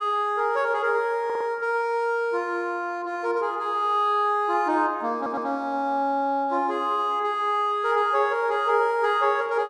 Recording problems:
audio stuttering; at 1.5 s and at 5 s

